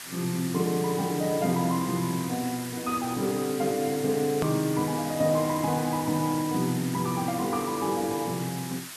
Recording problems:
background hiss; SNR 10 dB
click at an edit; at 4.5 s

